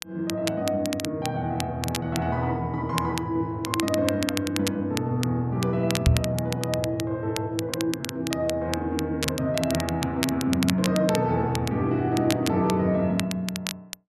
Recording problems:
crackling; vinyl, SNR 8 dB
microphone bump; at 6 s; peak +9 dB vs average level

